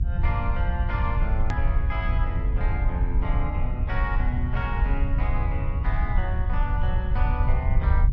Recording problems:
treble cut off; nothing above 7.7 kHz
hum; 60 Hz, harmonics up to 540 Hz, SNR 9 dB
rumble; below 76 Hz, SNR -7 dB
edit click; at 1.5 s

